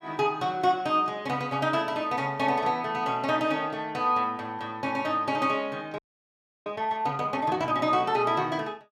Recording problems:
audio freezing; at 6 s for 0.5 s

